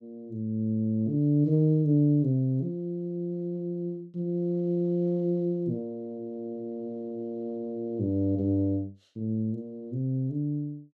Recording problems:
none

